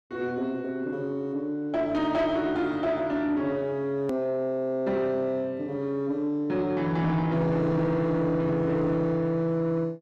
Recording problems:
distortion; soft clipping, signal-to-distortion ratio 12 dB
hard cut with a click; at 4 s

